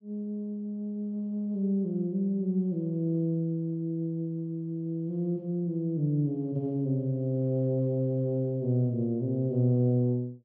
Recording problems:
none

